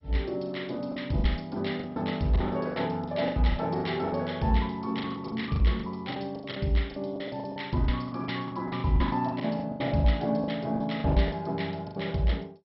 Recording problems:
codec artefacts; MP2, log-spectral distance 4 dB, nothing above 5.5 kHz
packet loss; 16% of the sound replaced, filled with the last packet

